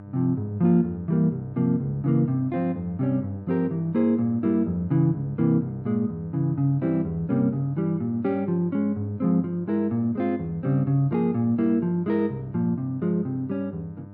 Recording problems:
hum; 50 Hz, harmonics up to 1.2 kHz, SNR 17 dB

